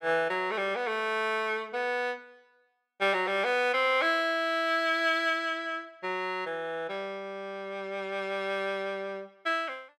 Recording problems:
none

